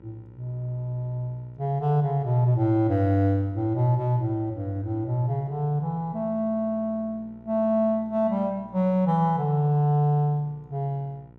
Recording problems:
mains hum; 60 Hz, harmonics up to 1 kHz, SNR 25 dB

